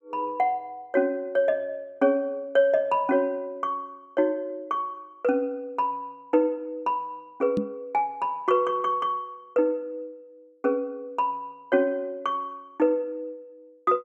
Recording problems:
microphone bump; at 7.5 s; peak +3 dB vs average level

